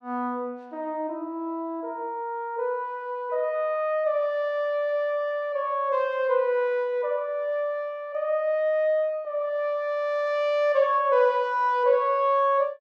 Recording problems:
none

